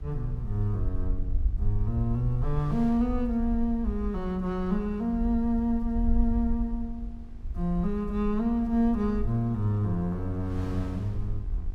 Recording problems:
hum; 50 Hz, harmonics up to 1.6 kHz, SNR 24 dB
low-frequency rumble; below 58 Hz, strongest tone 20 Hz, SNR 7 dB
wind on the microphone; below 110 Hz, SNR 21 dB

